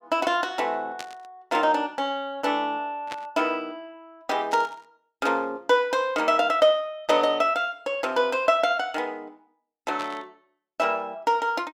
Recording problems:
static burst; 4 times, first at 1 s; peak -7 dB vs average level

